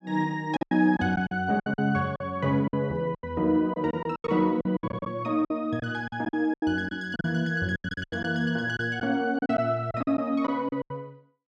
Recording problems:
packet loss; 15% of the sound replaced, filled with silence

